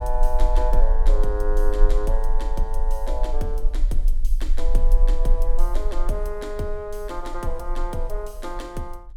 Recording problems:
rumble; below 34 Hz, strongest tone 20 Hz, SNR -6 dB

